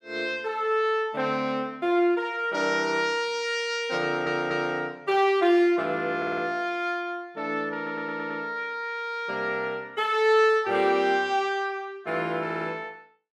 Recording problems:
audio stuttering; 4 times, first at 4 s

